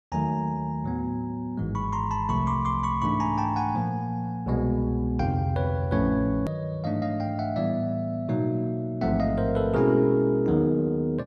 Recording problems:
hard cut with a click; at 6.5 s

